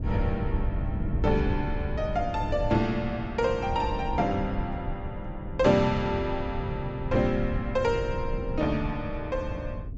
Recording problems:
treble missing; nothing above 8 kHz
rumble; below 130 Hz, SNR 5 dB

